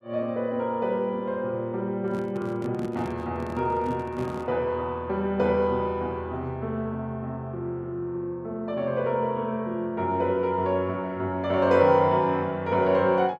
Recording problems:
handling noise; from 2 to 4.5 s; peak -5 dB vs average level

